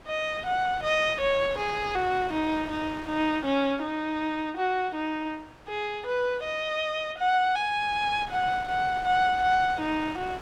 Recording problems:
wind on the microphone; below 1.6 kHz, SNR 17 dB

